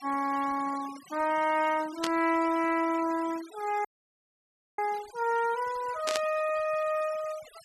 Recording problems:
noise reduction artefacts; signal-to-artefact ratio 18 dB
burst of static; at 2 s and at 6 s; peak +2 dB vs average level
audio cutting out; at 4 s for 1 s

